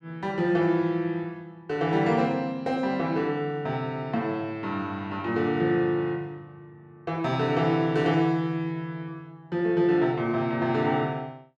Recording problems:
none

